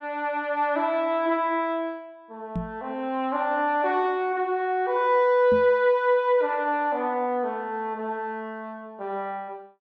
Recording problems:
knock on the microphone; at 2.5 s and at 5.5 s; peak -2 dB vs average level

